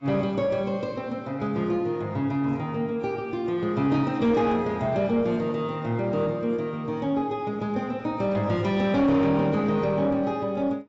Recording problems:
lossy compression; AAC, log-spectral distance 2 dB
distortion; soft clipping, signal-to-distortion ratio 11 dB

